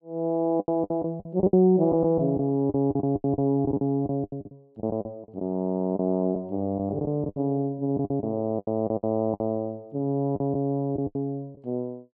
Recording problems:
lost packets; 14% of the sound replaced, filled with the last packet

